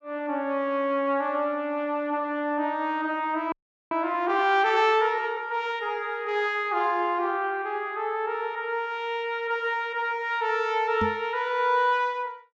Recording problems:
treble missing; nothing above 8 kHz
frozen audio; at 3.5 s
knock on the microphone; at 11 s; peak -1 dB vs average level

